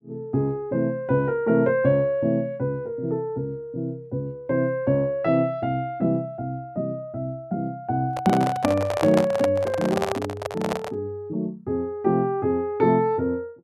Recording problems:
microphone handling noise; from 8 to 11 s; peak +4 dB vs average level

